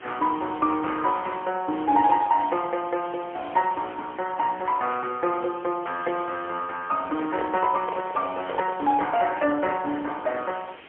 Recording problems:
phone line; 220 Hz to 3.4 kHz, AMR-NB, then MP3
hiss; SNR 20 dB
handling noise; from 7 to 9 s; peak -1 dB vs average level

